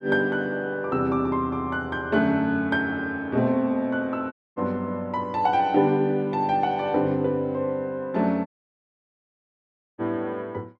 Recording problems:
audio cutting out; at 4.5 s and at 8.5 s for 1.5 s

